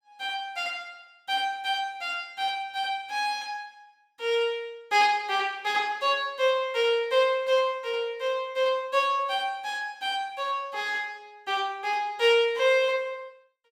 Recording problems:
none

